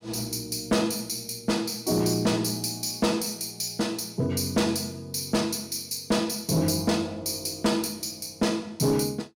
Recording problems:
distortion; hard clipping, signal-to-distortion ratio 10 dB

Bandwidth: 16.5 kHz